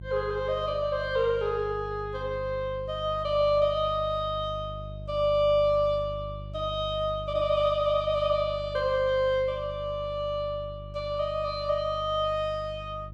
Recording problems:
electrical hum; 50 Hz, harmonics up to 350 Hz, SNR 14 dB

